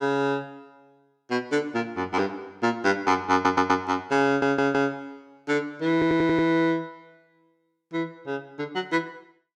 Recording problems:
stutter; at 3.5 s, at 4.5 s and at 6 s

